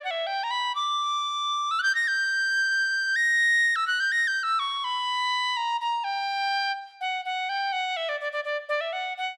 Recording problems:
none

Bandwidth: 12.5 kHz